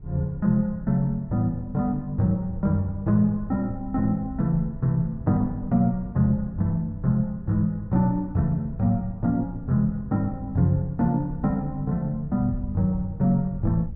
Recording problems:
wind noise; below 94 Hz, SNR 15 dB

